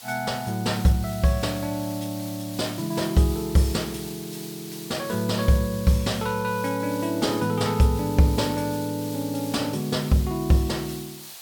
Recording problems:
hiss; SNR 14 dB

